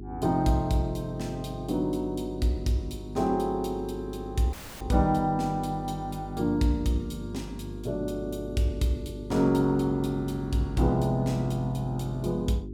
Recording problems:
electrical hum; 50 Hz, harmonics up to 400 Hz, SNR 11 dB
audio cutting out; at 4.5 s

